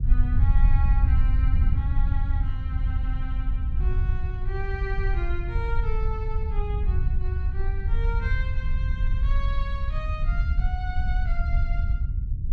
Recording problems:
rumble; below 72 Hz, SNR -11 dB

